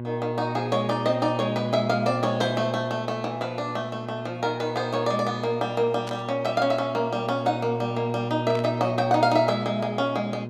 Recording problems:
electrical hum; 60 Hz, harmonics up to 1.1 kHz, SNR 8 dB
burst of static; at 6 s and at 8.5 s; peak -8 dB vs average level

